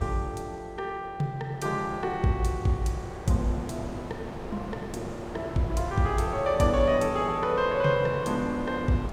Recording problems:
wind on the microphone; below 750 Hz, SNR 11 dB

